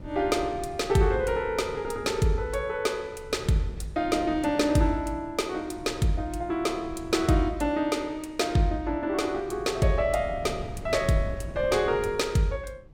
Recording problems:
wind noise; below 200 Hz, SNR 16 dB

